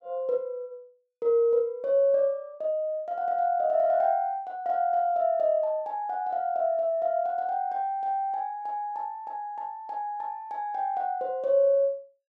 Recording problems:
none

